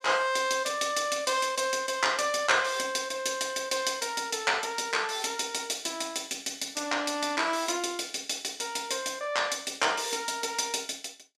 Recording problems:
none

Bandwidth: 14.5 kHz